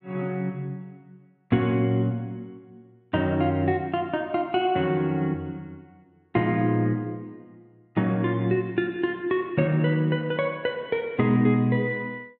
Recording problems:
none

